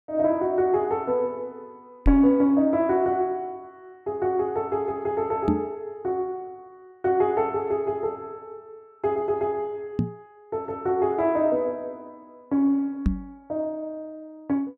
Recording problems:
microphone thump; 4 times, first at 2 s; peak +6 dB vs average level

